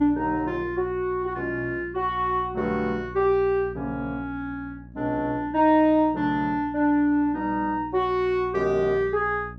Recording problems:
hum; 60 Hz, harmonics up to 600 Hz, SNR 18 dB

